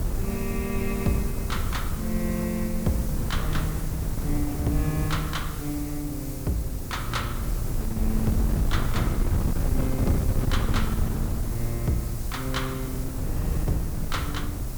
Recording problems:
hiss; SNR 8 dB
wind on the microphone; below 130 Hz, SNR -1 dB

